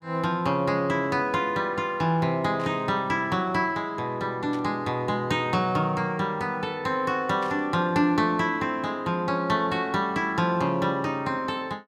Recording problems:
static burst; at 2.5 s, at 4.5 s and at 7.5 s; peak -12 dB vs average level

